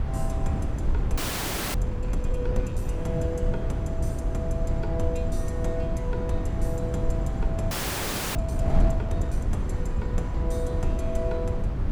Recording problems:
wind noise; below 110 Hz, SNR -5 dB
frozen audio; at 1 s for 0.5 s and at 7.5 s for 0.5 s

